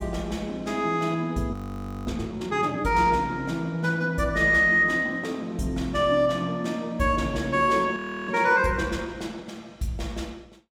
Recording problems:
audio freezing; at 1.5 s for 0.5 s and at 8 s

